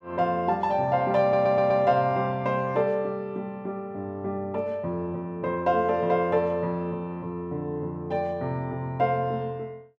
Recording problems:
stutter; at 1 s

